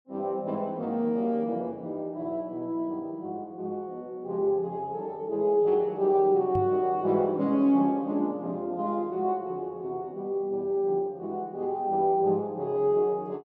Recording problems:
knock on the microphone; at 6.5 s; peak -2 dB vs average level

